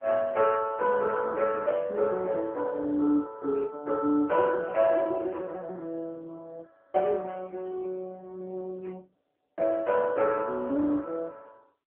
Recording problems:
phone line; 260 Hz to 2.2 kHz, AMR-NB

